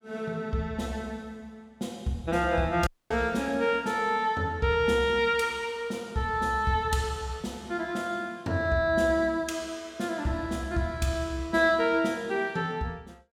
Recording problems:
audio cutting out; at 3 s

